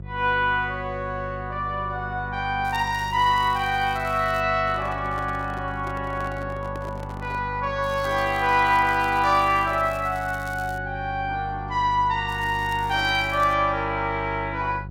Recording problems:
hum; 50 Hz, harmonics up to 550 Hz, SNR 12 dB
crackling; from 2.5 to 4.5 s, from 8 to 11 s and from 12 to 14 s; loose cable, SNR 24 dB
microphone handling noise; from 4.5 to 7.5 s; peak -10 dB vs average level

